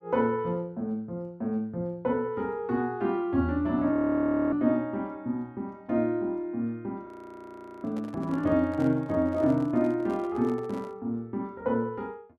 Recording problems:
audio freezing; at 4 s for 0.5 s and at 7 s for 1 s
microphone handling noise; from 8 to 11 s; peak -10 dB vs average level

